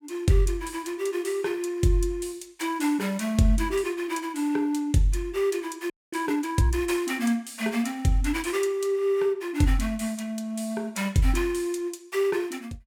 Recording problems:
audio freezing; at 6 s

